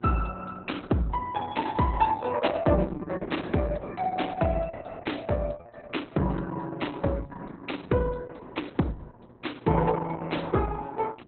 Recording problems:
lossy codec; Opus, log-spectral distance 5 dB, nothing above 4 kHz
hum; 60 Hz, harmonics up to 1.2 kHz, SNR 26 dB

